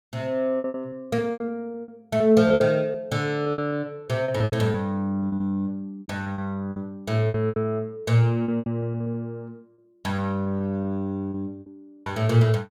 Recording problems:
packet loss; 14% of the sound replaced, filled with repeated pitch periods

